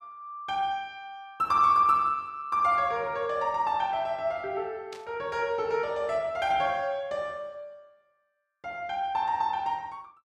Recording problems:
burst of static; at 5 s; peak -13 dB vs average level

